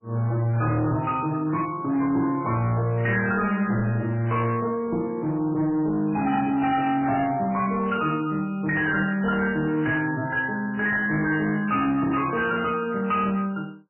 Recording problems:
lossy compression; MP3, log-spectral distance 3 dB, nothing above 2.9 kHz
distorted audio; hard clipping, signal-to-distortion ratio 11 dB

